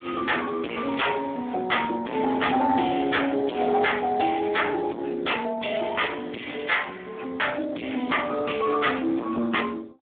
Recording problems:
phone line; 190 Hz to 3.5 kHz, Speex
distorted audio; soft clipping, signal-to-distortion ratio 5 dB

